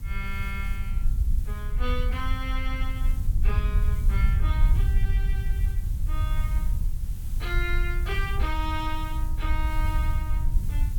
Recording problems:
background hiss; slope -1 dB per octave, SNR 15 dB
rumble; below 64 Hz, SNR -7 dB

